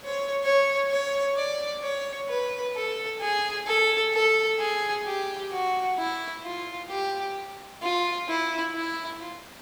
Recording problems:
background hiss; slope -3 dB per octave, SNR 19 dB

